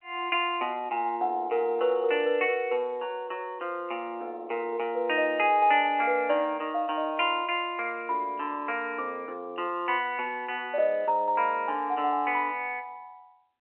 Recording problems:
phone line; 260 Hz to 3.1 kHz, G.711

